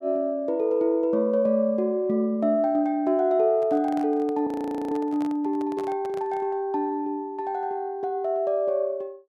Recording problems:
microphone handling noise; from 3.5 to 6.5 s; peak -11 dB vs average level
frozen audio; at 4.5 s

